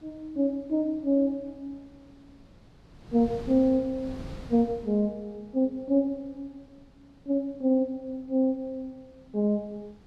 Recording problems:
wind noise; below 310 Hz, SNR 21 dB

